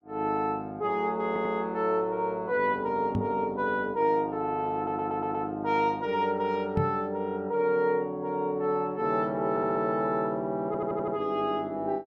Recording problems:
stutter; 4 times, first at 1.5 s
microphone thump; at 3 s and at 7 s; peak +3 dB vs average level

